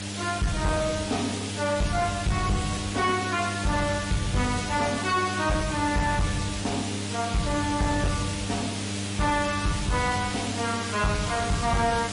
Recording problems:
lossy codec; AAC, then MP3, log-spectral distance 10 dB, nothing above 10.4 kHz
distorted audio; soft clipping, signal-to-distortion ratio 10 dB
hum; 50 Hz, harmonics up to 900 Hz, SNR 8 dB
hiss; slope -2 dB per octave, SNR 6 dB

